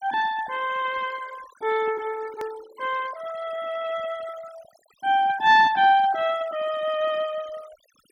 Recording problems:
noise reduction artefacts; signal-to-artefact ratio 20 dB
edit click; at 2.5 s

